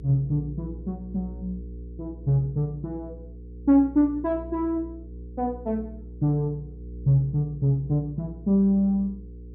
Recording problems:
electrical hum; 60 Hz, harmonics up to 480 Hz, SNR 15 dB

